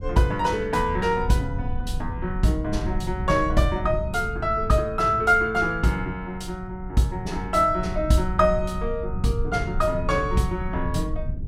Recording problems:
low-frequency rumble; below 98 Hz, SNR 8 dB

